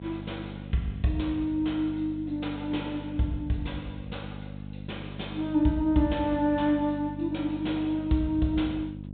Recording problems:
treble missing; nothing above 4 kHz
mains hum; 50 Hz, harmonics up to 550 Hz, SNR 11 dB

